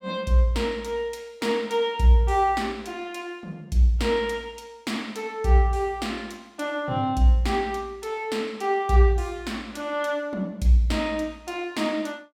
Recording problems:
none

